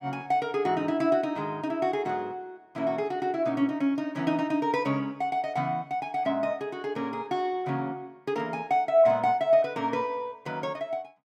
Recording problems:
none

